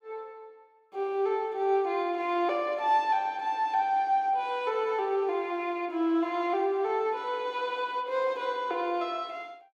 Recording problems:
none

